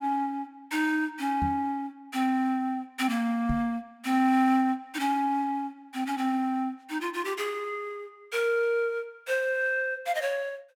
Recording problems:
microphone bump; at 1.5 s and at 3.5 s; peak 0 dB vs average level

